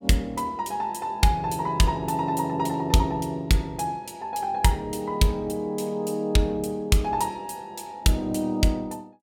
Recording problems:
none

